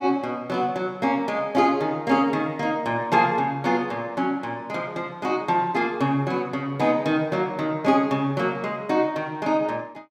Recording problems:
none

